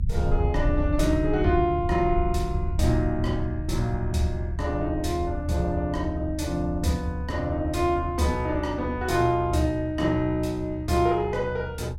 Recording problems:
low-frequency rumble; below 78 Hz, SNR 6 dB

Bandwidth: 16.5 kHz